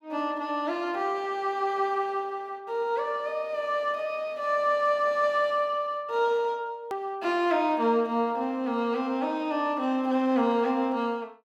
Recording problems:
hard cut with a click; at 7 s

